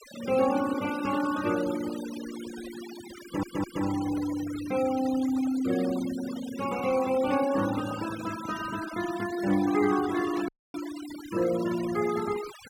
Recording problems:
denoising artefacts; signal-to-artefact ratio 13 dB
stutter; at 3 s
static burst; at 10 s; peak -15 dB vs average level
audio cutting out; at 10 s

